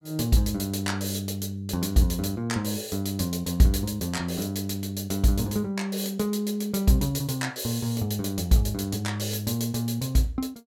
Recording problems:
none

